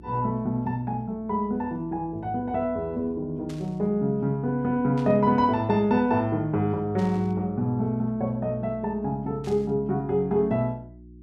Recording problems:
hum; 60 Hz, harmonics up to 360 Hz, SNR 22 dB
static burst; 4 times, first at 3.5 s; peak -15 dB vs average level

